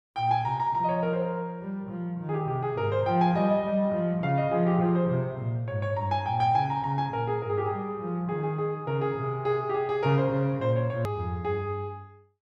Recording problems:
click at an edit; at 11 s

